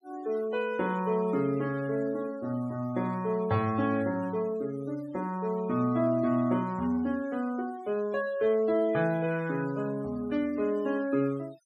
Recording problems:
noise reduction artefacts; signal-to-artefact ratio 22 dB

